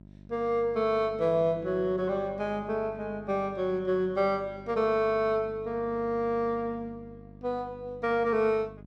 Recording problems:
mains hum; 50 Hz, harmonics up to 700 Hz, SNR 20 dB

